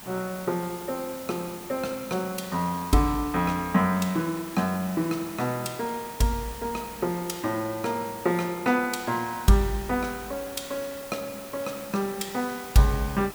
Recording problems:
background hiss; slope -3 dB per octave, SNR 13 dB

